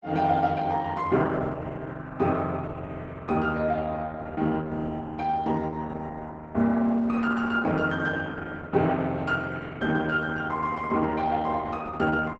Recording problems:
codec artefacts; Opus, log-spectral distance 3 dB, nothing above 8 kHz

